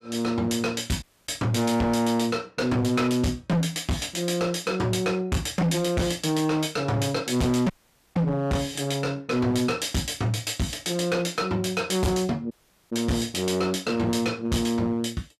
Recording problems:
distorted audio; hard clipping, signal-to-distortion ratio 7 dB
dropout; at 1 s, at 7.5 s and at 13 s

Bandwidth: 14.5 kHz